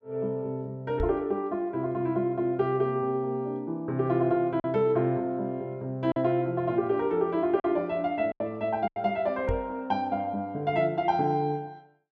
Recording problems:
packet loss; 2% of the sound replaced, filled with silence
knock on the microphone; at 1 s and at 9.5 s; peak 0 dB vs average level

